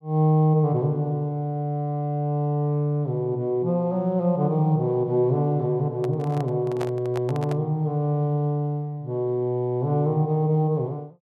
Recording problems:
microphone handling noise; from 6 to 7.5 s; peak -5 dB vs average level

